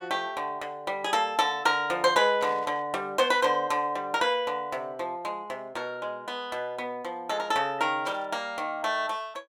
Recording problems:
static burst; at 2.5 s and at 8 s; peak -12 dB vs average level

